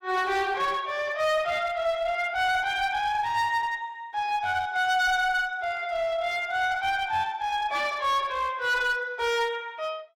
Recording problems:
distortion; hard clipping, uneven, signal-to-distortion ratio 10 dB

